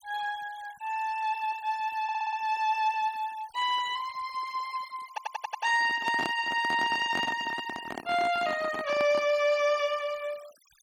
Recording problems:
noise reduction artefacts; signal-to-artefact ratio 20 dB
audio stuttering; at 2 s and at 5 s
handling noise; from 5.5 to 9.5 s; peak -2 dB vs average level

